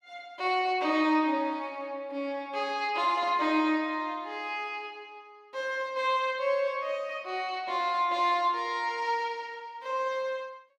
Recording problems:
none

